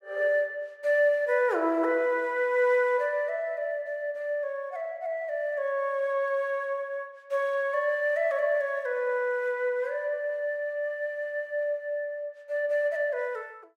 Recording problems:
none

